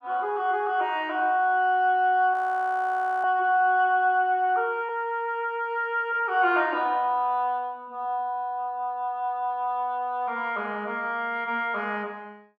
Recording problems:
audio freezing; at 2.5 s for 1 s

